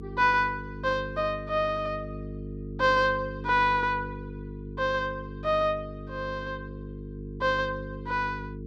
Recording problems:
electrical hum; 50 Hz, harmonics up to 450 Hz, SNR 11 dB

